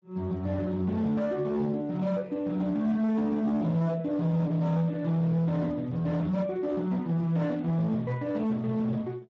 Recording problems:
lossy compression; Speex, log-spectral distance 2 dB
distortion; hard clipping, signal-to-distortion ratio 11 dB

